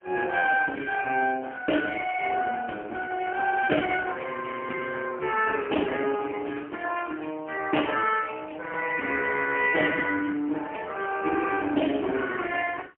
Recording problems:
phone line; 220 Hz to 2.3 kHz, AMR-NB, then MP3

